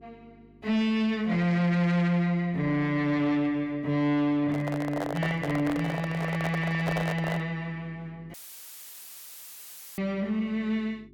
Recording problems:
distortion; soft clipping, signal-to-distortion ratio 10 dB
hum; 50 Hz, harmonics up to 400 Hz, SNR 26 dB
microphone handling noise; from 4.5 to 7.5 s; peak 0 dB vs average level
dropout; at 8.5 s for 1.5 s; filled with static

